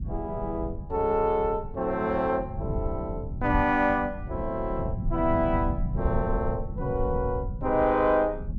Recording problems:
low-frequency rumble; below 130 Hz, SNR 7 dB

